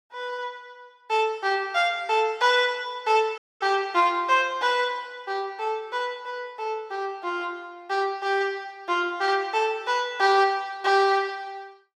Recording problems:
audio cutting out; at 3.5 s

